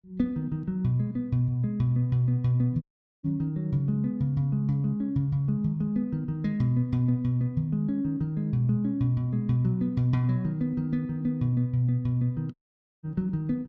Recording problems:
audio cutting out; at 3 s and at 13 s

